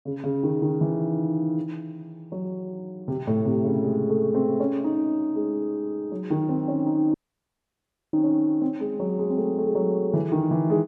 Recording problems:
audio cutting out; at 7 s for 1 s

